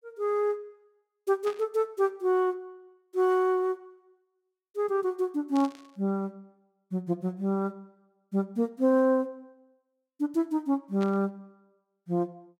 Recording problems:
static burst; at 1.5 s, at 5.5 s and at 11 s; peak -10 dB vs average level

